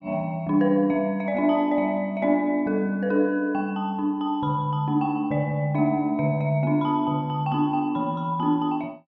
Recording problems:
none

